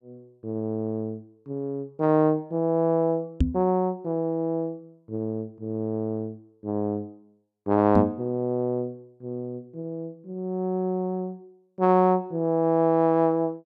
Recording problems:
microphone thump; at 3.5 s and at 8 s; peak +7 dB vs average level

